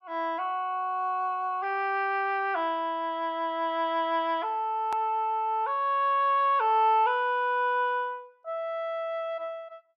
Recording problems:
hard cut with a click; at 5 s

